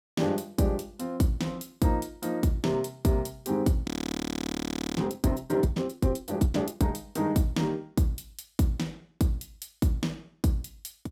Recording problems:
frozen audio; at 4 s for 1 s

